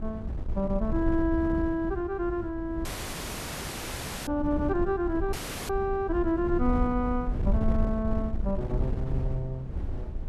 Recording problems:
wind on the microphone; below 88 Hz, SNR 4 dB
audio cutting out; at 3 s for 1.5 s and at 5.5 s

